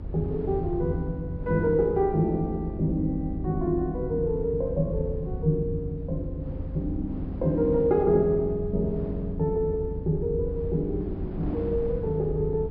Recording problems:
treble missing; nothing above 5.5 kHz
hum; 50 Hz, harmonics up to 550 Hz, SNR 12 dB
low-frequency rumble; below 82 Hz, SNR 11 dB
wind on the microphone; below 390 Hz, SNR 16 dB

